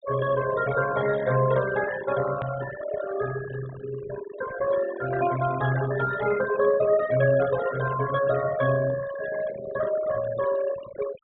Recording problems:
treble missing; nothing above 3.8 kHz
noise reduction artefacts; signal-to-artefact ratio 12 dB
hard cut with a click; at 2.5 s

